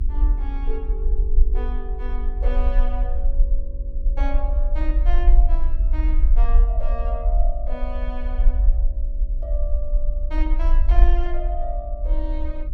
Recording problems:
hum; 50 Hz, harmonics up to 400 Hz, SNR 12 dB
low-frequency rumble; below 46 Hz, strongest tone 22 Hz, SNR -11 dB

